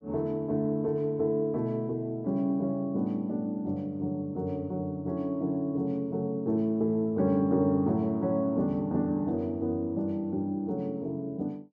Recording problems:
none

